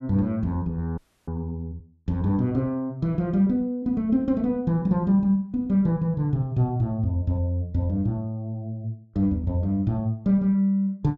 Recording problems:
audio freezing; at 1 s

